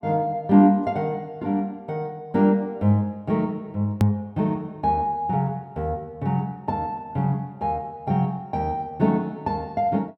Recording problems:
edit click; at 4 s

